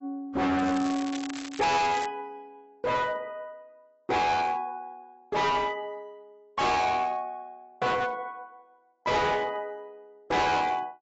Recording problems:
lossy compression; AAC, log-spectral distance 2 dB, nothing above 7.6 kHz
distortion; hard clipping, signal-to-distortion ratio 6 dB
crackle; from 0.5 to 2 s; loose cable, SNR 12 dB

